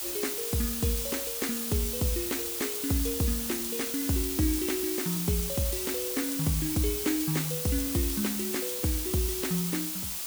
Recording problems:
hiss; slope +2 dB per octave, SNR 0 dB

